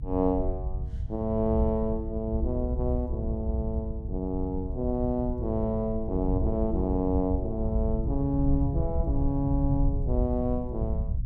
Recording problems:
rumble; below 86 Hz, SNR 2 dB

